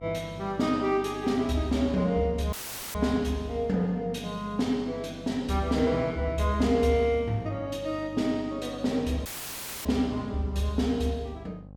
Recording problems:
hum; 50 Hz, harmonics up to 850 Hz, SNR 18 dB
dropout; at 2.5 s and at 9.5 s for 0.5 s; filled with static

